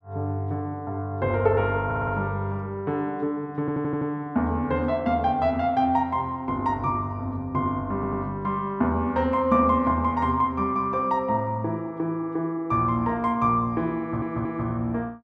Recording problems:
audio stuttering; 4 times, first at 2 s

